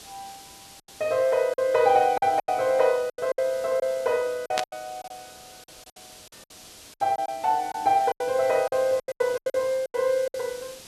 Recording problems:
hiss; SNR 20 dB
lost packets; 13% of the sound replaced, filled with silence
static burst; at 4.5 s; peak +2 dB vs average level

